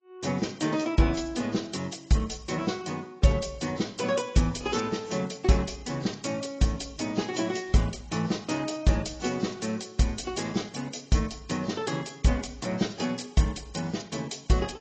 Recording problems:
lossy codec; AAC, log-spectral distance 6 dB, nothing above 7.6 kHz

